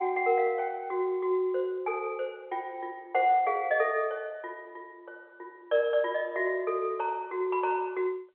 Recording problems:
phone line; 300 Hz to 3.4 kHz, G.711

